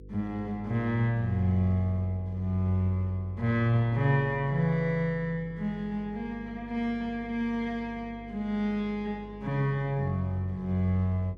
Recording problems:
hum; 50 Hz, harmonics up to 500 Hz, SNR 18 dB

